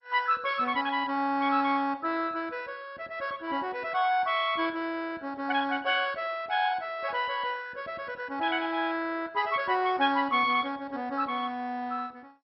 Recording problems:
lossy compression; MP2, log-spectral distance 4 dB, nothing above 4.5 kHz

